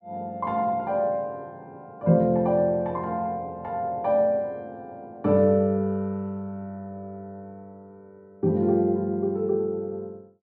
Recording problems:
none

